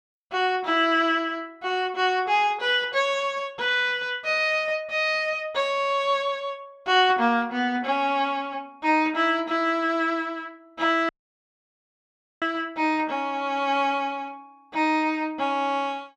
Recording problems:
dropout; at 11 s for 1.5 s

